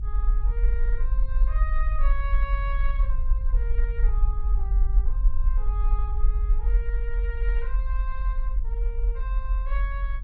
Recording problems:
rumble; below 46 Hz, SNR -13 dB

